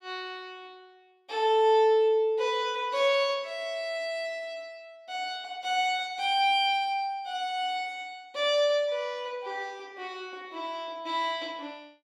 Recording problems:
none

